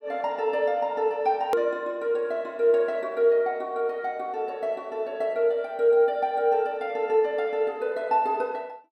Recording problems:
hard cut with a click; at 1.5 s

